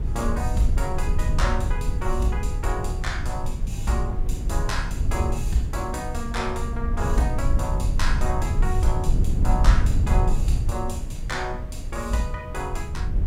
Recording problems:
hum; 60 Hz, harmonics up to 720 Hz, SNR 20 dB
background hiss; SNR 21 dB
rumble; below 80 Hz, SNR -3 dB

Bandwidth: 16 kHz